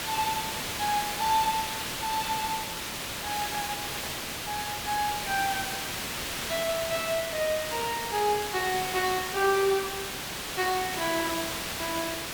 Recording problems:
background hiss; slope -1 dB per octave, SNR 2 dB
static burst; at 8.5 s; peak -8 dB vs average level

